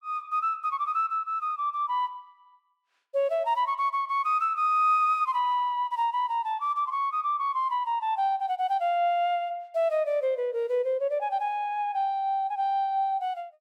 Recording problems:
none

